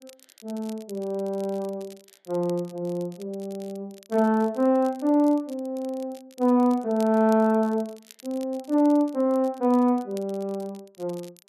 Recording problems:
crackling; vinyl, SNR 26 dB

